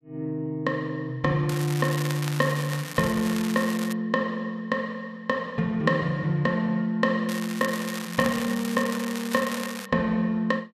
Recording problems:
crackling; from 1.5 to 4 s and from 7.5 to 10 s; loose cable, SNR 10 dB

